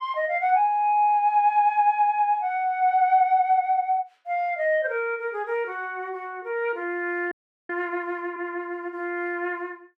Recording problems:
frozen audio; at 7.5 s

